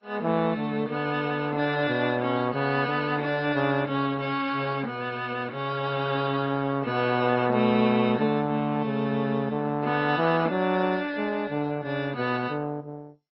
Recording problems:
lossy codec; MP2, then AAC, log-spectral distance 3 dB, nothing above 5.3 kHz

